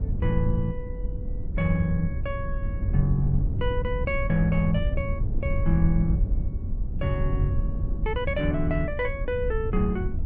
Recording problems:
low-frequency rumble; below 90 Hz, SNR 1 dB

